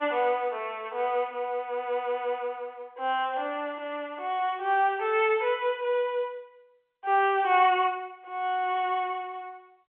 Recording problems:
phone line; 320 Hz to 3.4 kHz, G.711

